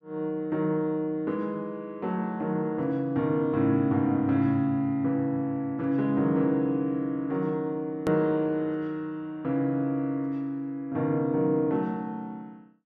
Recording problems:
click at an edit; at 8 s

